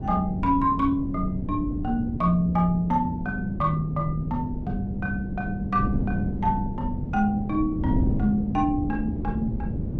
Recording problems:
wind on the microphone; below 220 Hz, SNR 5 dB

